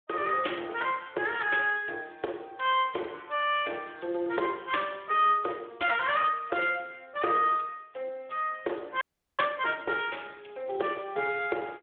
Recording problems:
phone line; 300 Hz to 3.5 kHz, Speex
audio freezing; at 9 s

